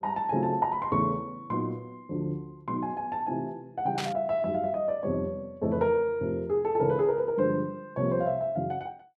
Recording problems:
static burst; at 4 s; peak -2 dB vs average level

